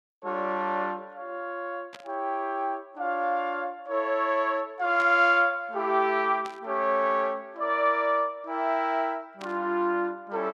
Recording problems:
static burst; 4 times, first at 2 s; peak -10 dB vs average level

